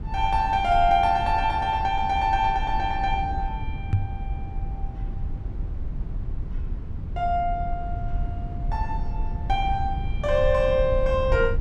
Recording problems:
low-frequency rumble; below 80 Hz, SNR 8 dB
knock on the microphone; at 4 s; peak +5 dB vs average level

